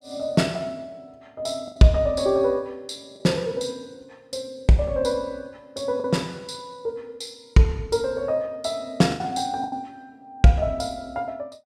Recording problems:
packet loss; 3% of the sound replaced, filled with the last packet

